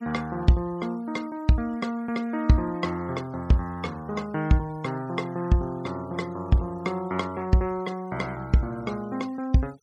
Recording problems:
denoising artefacts; signal-to-artefact ratio 23 dB

